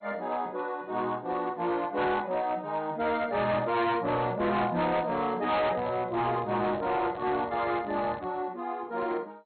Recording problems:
codec artefacts; MP2, log-spectral distance 2 dB, nothing above 4.2 kHz
distorted audio; hard clipping, signal-to-distortion ratio 10 dB
microphone handling noise; from 5.5 to 8.5 s; peak -8 dB vs average level

